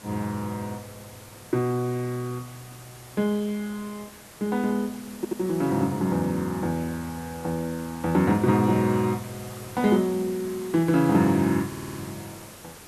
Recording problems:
hiss; slope -3 dB per octave, SNR 18 dB
audio stuttering; at 5 s and at 12 s

